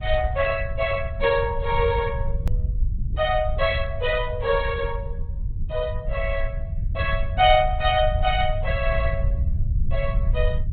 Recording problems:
low-pass filter; nothing above 3.8 kHz
lossy compression; Opus, log-spectral distance 2 dB
low-frequency rumble; below 80 Hz, SNR 4 dB
hard cut with a click; at 2.5 s

